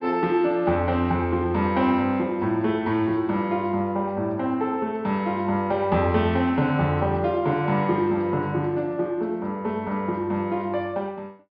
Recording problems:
treble cut off; nothing above 5.5 kHz

